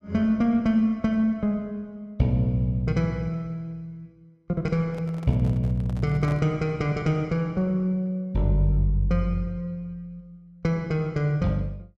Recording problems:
handling noise; from 5 to 6.5 s; peak -10 dB vs average level

